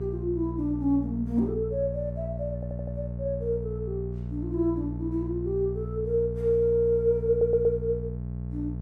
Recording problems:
electrical hum; 60 Hz, harmonics up to 660 Hz, SNR 6 dB
audio stuttering; at 2.5 s and at 7.5 s

